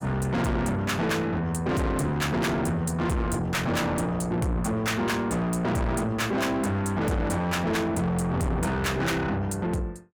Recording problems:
distorted audio; soft clipping, signal-to-distortion ratio 6 dB

